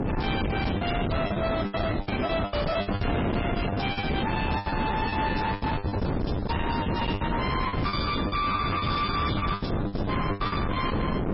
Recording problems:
lossy compression; MP3, log-spectral distance 6 dB, nothing above 5.2 kHz
distorted audio; soft clipping, signal-to-distortion ratio 6 dB
wind noise; below 1 kHz, SNR 0 dB
lost packets; 17% of the sound replaced, filled with the last packet

